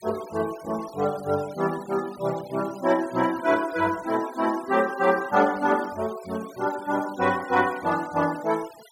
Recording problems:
noise reduction artefacts; signal-to-artefact ratio 19 dB

